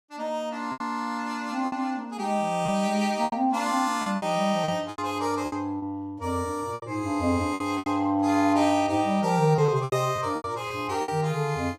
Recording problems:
lost packets; 9% of the sound replaced, filled with repeated pitch periods

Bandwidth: 14.5 kHz